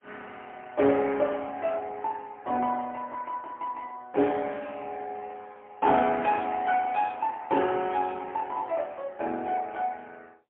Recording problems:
telephone audio; 240 Hz to 3.3 kHz, AMR-NB, then MP3

